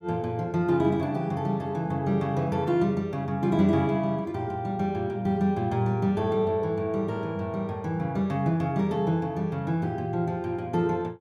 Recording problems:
none

